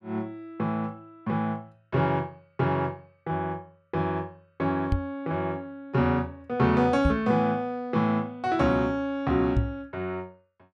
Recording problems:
knock on the microphone; at 5 s, at 7 s and at 9.5 s; peak +6 dB vs average level

